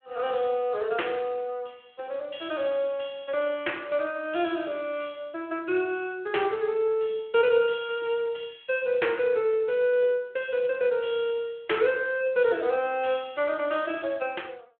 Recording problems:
telephone audio; 300 Hz to 3.4 kHz, Speex

